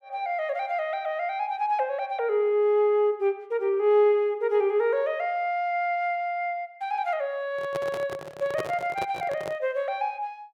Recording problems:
microphone handling noise; from 7.5 to 9.5 s; peak -1 dB vs average level

